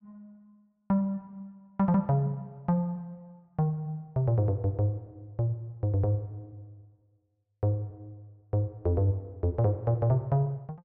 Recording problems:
none

